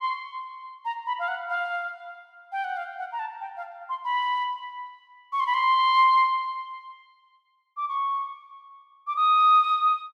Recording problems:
none

